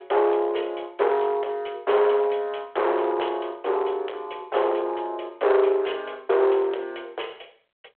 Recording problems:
phone line; 370 Hz to 3.4 kHz, G.726
distortion; hard clipping, uneven, signal-to-distortion ratio 9 dB

